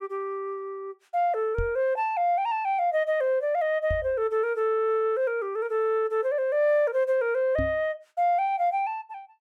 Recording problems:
microphone thump; at 1.5 s, at 4 s and at 7.5 s; peak -1 dB vs average level

